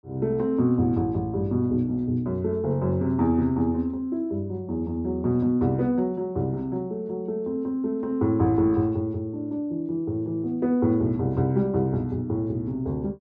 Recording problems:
none

